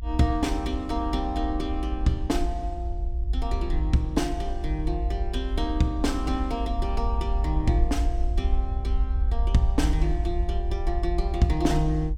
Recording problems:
rumble; below 58 Hz, SNR 1 dB

